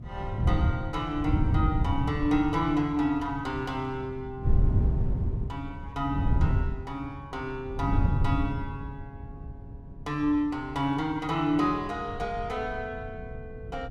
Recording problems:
wind noise; below 120 Hz, SNR 0 dB

